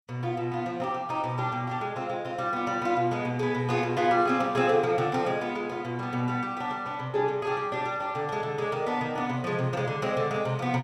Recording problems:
none

